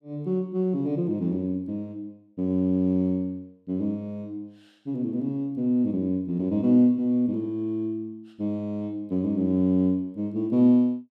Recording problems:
none

